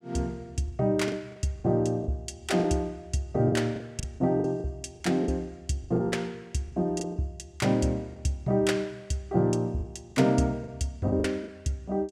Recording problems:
packet loss; 9% of the sound replaced, filled with the last packet

